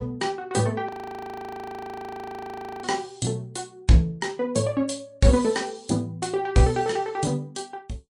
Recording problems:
lossy codec; MP3, log-spectral distance 3 dB
frozen audio; at 1 s for 2 s

